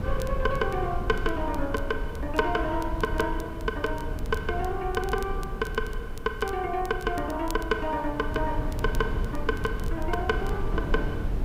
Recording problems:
background hiss; SNR 29 dB
rumble; below 100 Hz, SNR 4 dB
crackle; vinyl, SNR 20 dB

